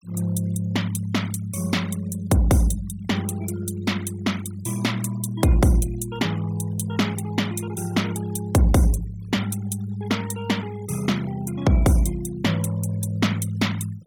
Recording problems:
noise reduction artefacts; signal-to-artefact ratio 19 dB

